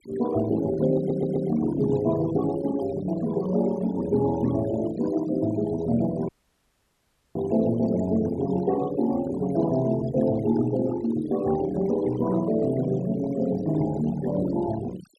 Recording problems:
denoising artefacts; signal-to-artefact ratio 16 dB
audio stuttering; at 1 s
audio cutting out; at 6.5 s for 1 s

